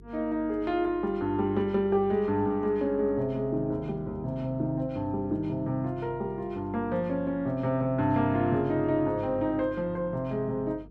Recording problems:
hum; 50 Hz, harmonics up to 450 Hz, SNR 22 dB

